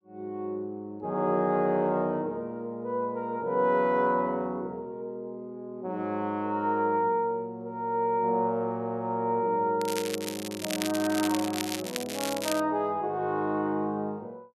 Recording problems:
crackle; from 10 to 13 s; loose cable, SNR 7 dB

